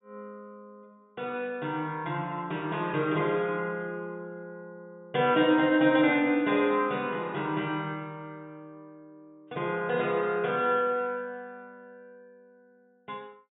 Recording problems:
low-pass filter; nothing above 4 kHz

